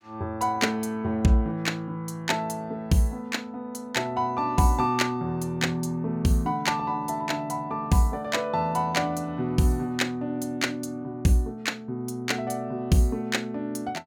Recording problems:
none

